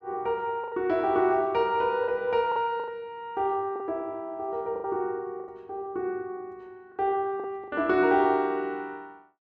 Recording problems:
lost packets; 6% of the sound replaced, filled with the last packet

